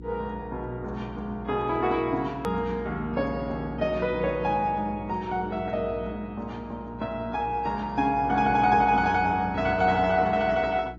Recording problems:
codec artefacts; AAC, log-spectral distance 2 dB, nothing above 13.7 kHz
hum; 60 Hz, harmonics up to 360 Hz, SNR 15 dB
hard cut with a click; at 2.5 s

